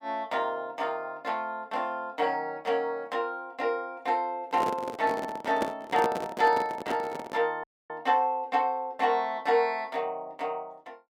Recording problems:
handling noise; from 4.5 to 7.5 s; peak +3 dB vs average level
dropout; at 7.5 s

